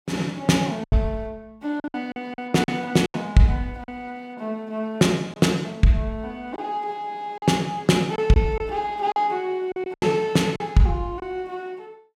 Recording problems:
lost packets; 7% of the sound replaced, filled with silence

